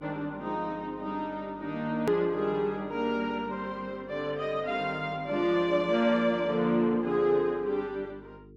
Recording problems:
hum; 50 Hz, harmonics up to 450 Hz, SNR 24 dB
hard cut with a click; at 2 s

